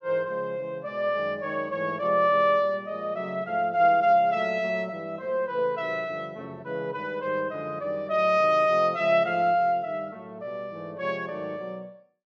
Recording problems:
none

